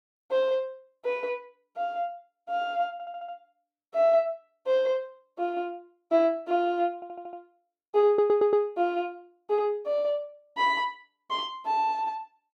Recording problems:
stutter; at 3 s, at 7 s and at 8 s

